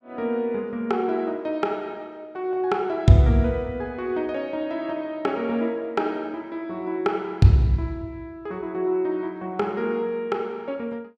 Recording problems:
none

